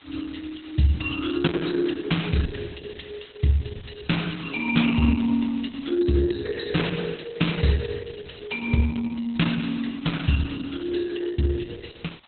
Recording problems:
lossy compression; Opus, log-spectral distance 11 dB, nothing above 4.1 kHz
hiss; SNR 25 dB

